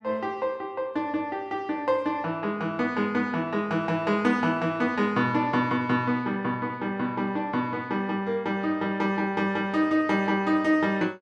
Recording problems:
none

